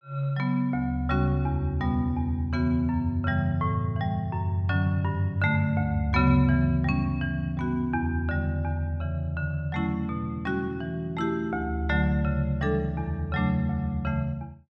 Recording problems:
none

